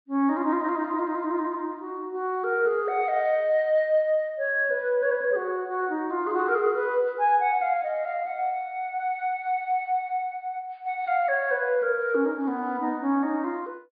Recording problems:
treble cut off; nothing above 4.8 kHz

